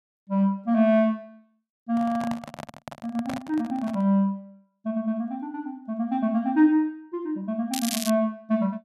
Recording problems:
handling noise; from 2 to 4 s; peak -5 dB vs average level
crackling; at 7.5 s; loose cable, SNR 6 dB

